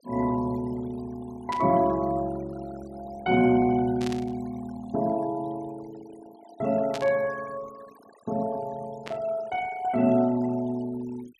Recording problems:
denoising artefacts; signal-to-artefact ratio 21 dB
burst of static; 4 times, first at 1.5 s; peak -6 dB vs average level

